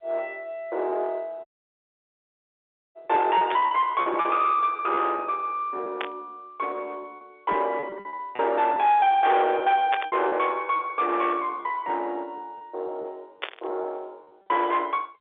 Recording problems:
phone line; 370 Hz to 3.7 kHz, G.711
distortion; soft clipping, signal-to-distortion ratio 10 dB
lost packets; 8% of the sound replaced, filled with repeated pitch periods
dropout; at 1.5 s for 1.5 s
static burst; 4 times, first at 3.5 s; peak +1 dB vs average level

